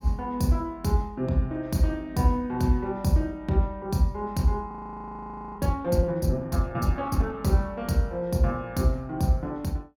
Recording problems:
frozen audio; at 4.5 s for 1 s

